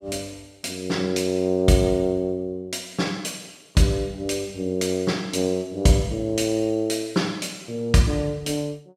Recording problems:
none

